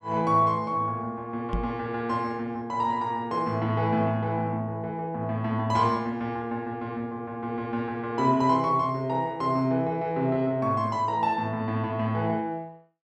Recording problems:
knock on the microphone; at 1.5 s; peak 0 dB vs average level

